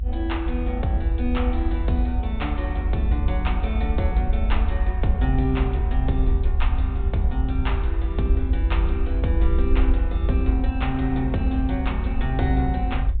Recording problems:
low-pass filter; nothing above 4 kHz
low-frequency rumble; below 66 Hz, SNR -2 dB
wind on the microphone; below 98 Hz, SNR 13 dB

